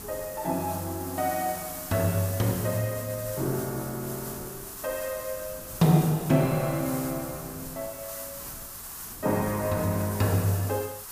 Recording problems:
hiss; SNR 9 dB
wind on the microphone; below 380 Hz, SNR 21 dB

